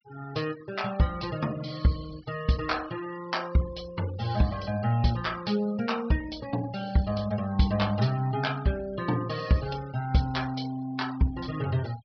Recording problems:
treble missing; nothing above 5.5 kHz
denoising artefacts; signal-to-artefact ratio 19 dB

